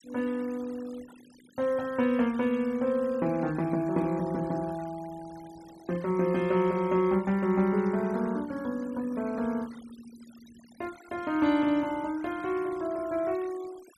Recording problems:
denoising artefacts; signal-to-artefact ratio 23 dB

